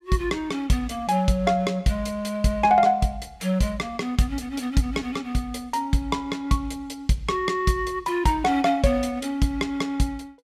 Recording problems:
none

